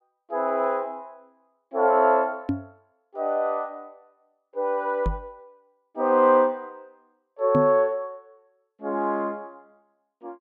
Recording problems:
microphone thump; at 2.5 s, at 5 s and at 7.5 s; peak +2 dB vs average level

